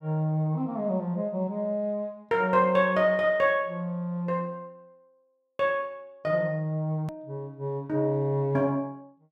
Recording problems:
edit click; at 7 s

